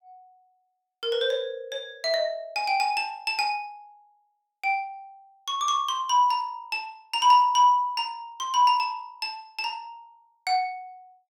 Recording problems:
none

